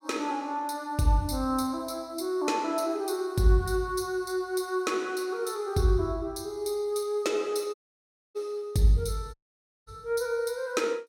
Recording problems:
dropout; at 7.5 s for 0.5 s and at 9.5 s for 0.5 s

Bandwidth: 16.5 kHz